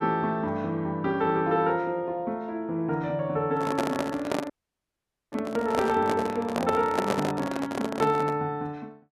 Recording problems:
microphone handling noise; from 3.5 to 8.5 s; peak +4 dB vs average level
dropout; at 4.5 s for 1 s

